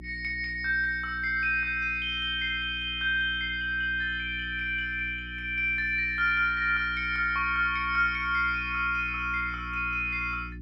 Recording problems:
hum; 60 Hz, harmonics up to 360 Hz, SNR 16 dB

